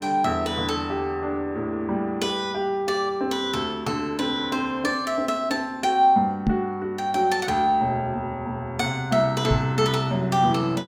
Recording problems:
microphone thump; at 6.5 s and at 9.5 s; peak +6 dB vs average level

